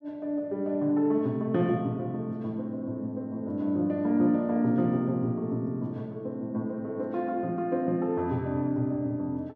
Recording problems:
none

